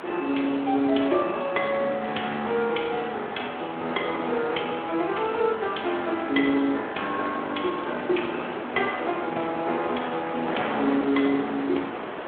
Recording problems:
phone line; 220 Hz to 3.6 kHz, Speex
background hiss; SNR 21 dB
wind noise; below 1.4 kHz, SNR 9 dB

